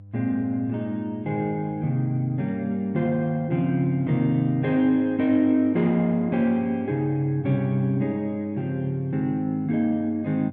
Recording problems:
mains hum; 50 Hz, harmonics up to 500 Hz, SNR 20 dB

